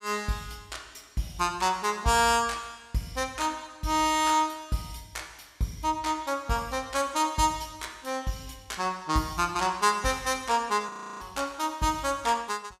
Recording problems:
frozen audio; at 11 s

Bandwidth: 15.5 kHz